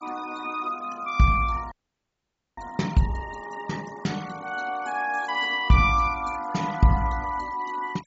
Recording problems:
treble missing; nothing above 8 kHz
noise reduction artefacts; signal-to-artefact ratio 21 dB
audio freezing; at 1.5 s for 1 s

